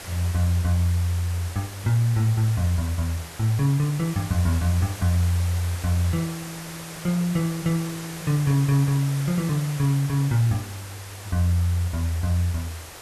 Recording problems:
background hiss; slope -2 dB per octave, SNR 13 dB

